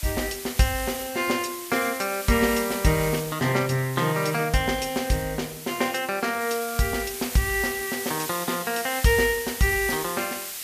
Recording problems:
hiss; slope +3 dB per octave, SNR 8 dB

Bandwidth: 14.5 kHz